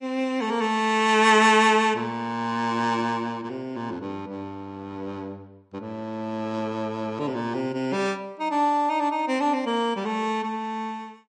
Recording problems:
lossy compression; MP3, log-spectral distance 2 dB, nothing above 9.8 kHz

